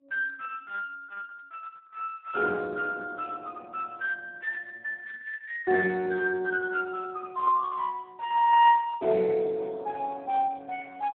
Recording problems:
phone line; 300 Hz to 3.3 kHz, Speex

